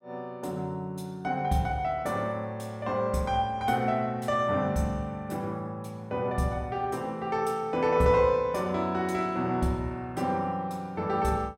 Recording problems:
none

